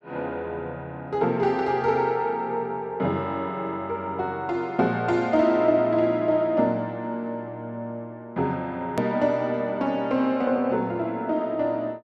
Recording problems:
click at an edit; at 9 s

